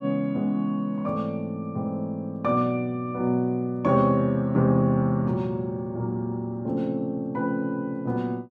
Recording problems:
none

